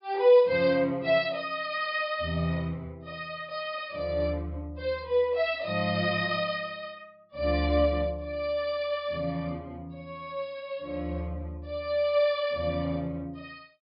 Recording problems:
low-pass filter; nothing above 5.5 kHz

